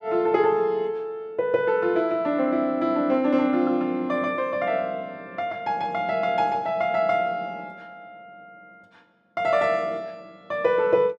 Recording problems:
none

